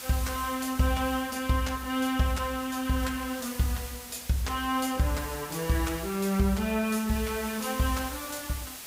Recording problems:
hiss; slope 0 dB per octave, SNR 11 dB

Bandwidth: 15.5 kHz